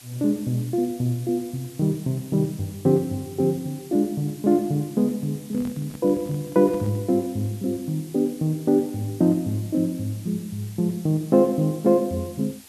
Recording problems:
hiss; SNR 21 dB
microphone handling noise; from 5.5 to 7 s; peak -10 dB vs average level

